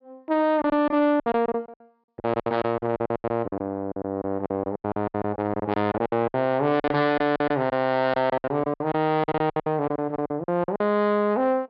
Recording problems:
treble missing; nothing above 5.5 kHz
distorted audio; soft clipping, signal-to-distortion ratio 12 dB
lost packets; 18% of the sound replaced, filled with silence

